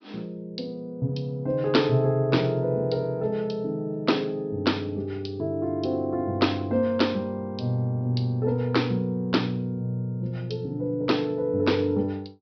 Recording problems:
low-pass filter; nothing above 5.5 kHz

